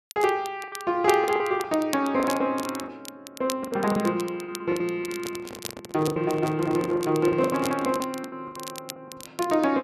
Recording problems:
crackling; vinyl, SNR 15 dB
lost packets; 14% of the sound replaced, filled with the last packet
microphone handling noise; from 5 to 8 s; peak -7 dB vs average level

